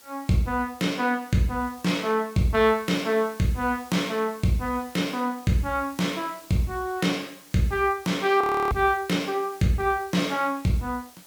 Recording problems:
background hiss; slope -1 dB per octave, SNR 22 dB
audio freezing; at 8.5 s

